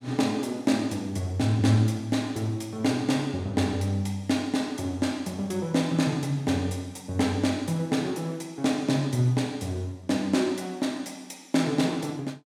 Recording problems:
none

